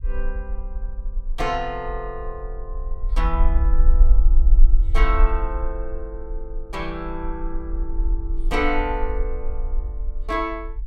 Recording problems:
low-frequency rumble; below 42 Hz, strongest tone 24 Hz, SNR -4 dB

